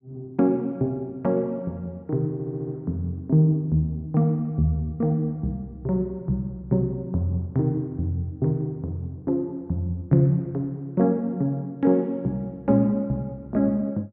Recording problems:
stutter; at 2.5 s

